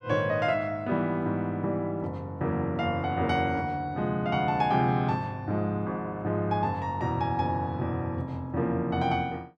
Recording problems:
none

